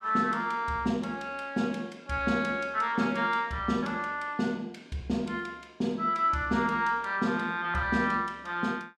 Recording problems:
none

